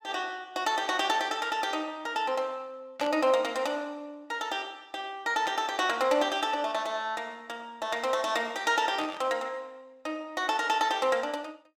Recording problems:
static burst; at 3 s, at 5.5 s and at 9 s; peak -6 dB vs average level

